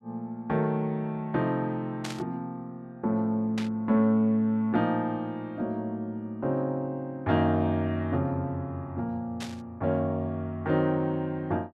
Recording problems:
burst of static; at 2 s, at 3.5 s and at 9.5 s; peak -4 dB vs average level

